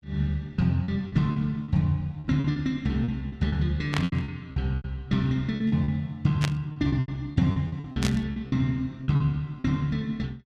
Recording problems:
packet loss; 13% of the sound replaced, filled with repeated pitch periods
static burst; at 4 s, at 6.5 s and at 8 s; peak +2 dB vs average level

